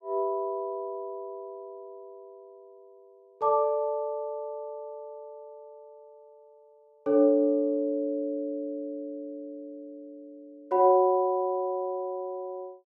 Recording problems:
none

